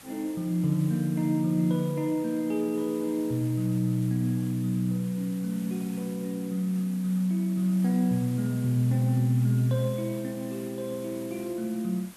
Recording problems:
background hiss; slope -2 dB per octave, SNR 20 dB

